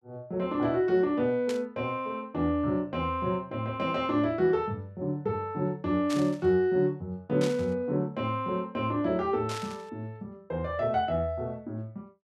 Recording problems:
static burst; 4 times, first at 1.5 s; peak -4 dB vs average level

